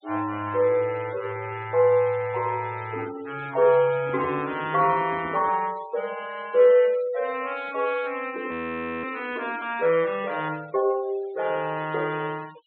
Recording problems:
treble missing; nothing above 4 kHz
denoising artefacts; signal-to-artefact ratio 19 dB
microphone handling noise; from 4 to 5.5 s; peak -10 dB vs average level
frozen audio; at 8.5 s for 0.5 s

